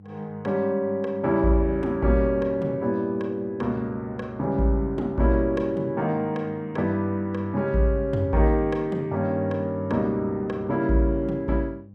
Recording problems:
electrical hum; 50 Hz, harmonics up to 500 Hz, SNR 22 dB

